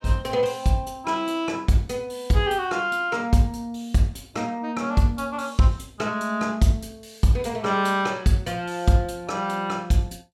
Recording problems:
none

